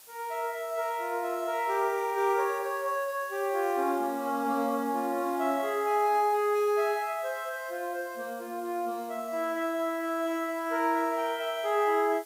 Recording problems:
background hiss; slope 0 dB per octave, SNR 20 dB

